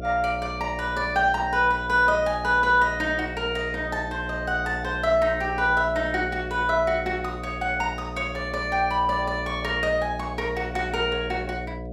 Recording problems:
electrical hum; 60 Hz, harmonics up to 720 Hz, SNR 11 dB

